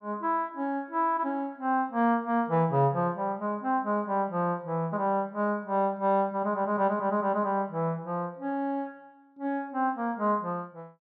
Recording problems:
none

